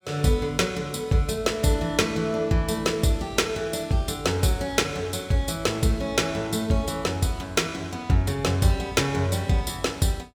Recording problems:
none

